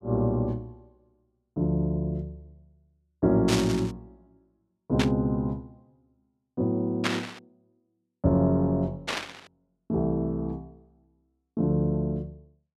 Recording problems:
static burst; 4 times, first at 3.5 s; peak +4 dB vs average level

